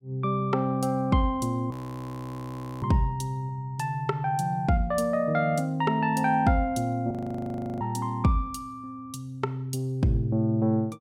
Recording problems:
audio freezing; at 1.5 s for 1 s and at 7 s for 0.5 s

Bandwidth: 16 kHz